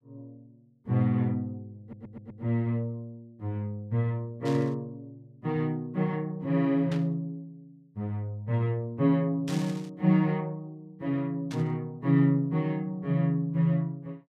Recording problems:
audio stuttering; at 2 s
burst of static; 4 times, first at 4.5 s; peak -8 dB vs average level

